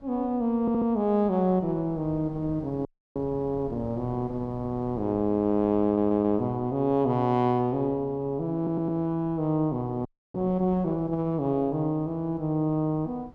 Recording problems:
wind noise; below 330 Hz, SNR 21 dB
stutter; at 0.5 s, at 6 s and at 8.5 s
audio freezing; at 3 s and at 10 s

